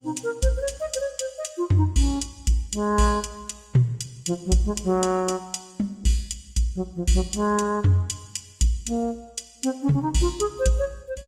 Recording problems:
lossy codec; Opus, log-spectral distance 3 dB

